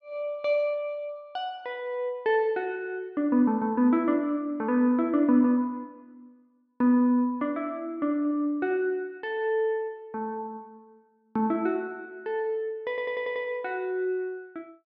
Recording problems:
audio stuttering; at 13 s

